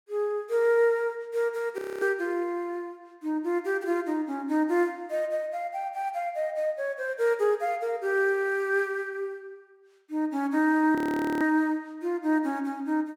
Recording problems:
audio freezing; at 2 s and at 11 s

